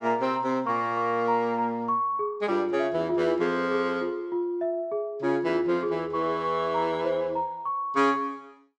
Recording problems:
none

